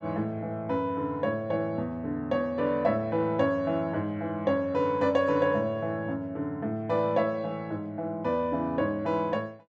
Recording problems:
none

